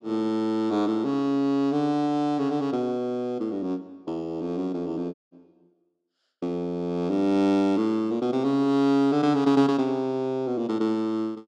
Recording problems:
audio cutting out; at 5 s

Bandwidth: 12 kHz